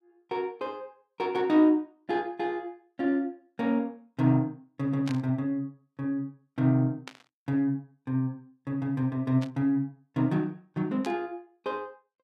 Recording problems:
static burst; 4 times, first at 5 s; peak -7 dB vs average level

